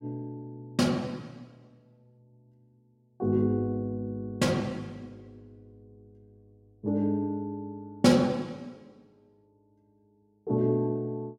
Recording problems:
none

